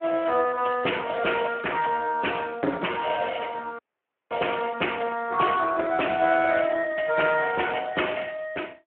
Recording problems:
phone line; 300 Hz to 3.1 kHz, Speex
dropout; at 4 s for 0.5 s

